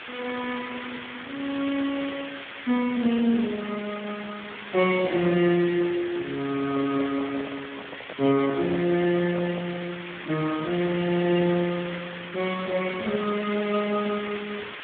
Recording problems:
telephone audio; 190 Hz to 3.5 kHz, Speex
background hiss; SNR 10 dB
handling noise; from 6.5 to 10 s; peak -6 dB vs average level

